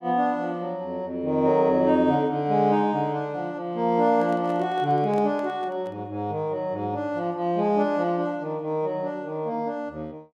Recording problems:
handling noise; from 4 to 6 s; peak -10 dB vs average level

